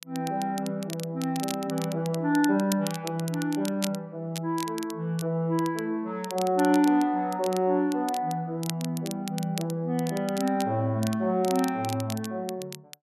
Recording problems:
crackle; vinyl, SNR 13 dB

